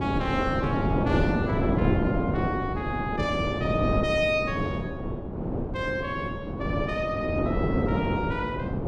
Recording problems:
wind noise; below 420 Hz, SNR -2 dB

